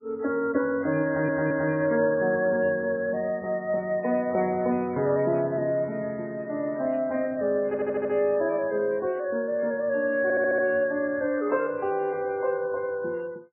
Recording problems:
lossy compression; MP3, log-spectral distance 2 dB
stutter; at 1 s, at 7.5 s and at 10 s

